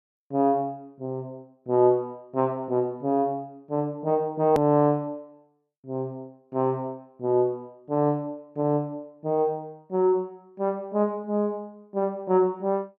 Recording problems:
edit click; at 4.5 s

